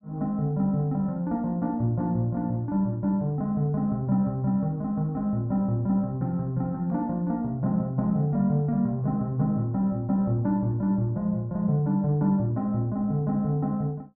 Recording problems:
none

